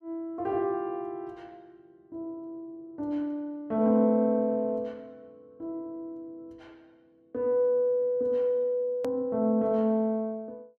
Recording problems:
click at an edit; at 9 s

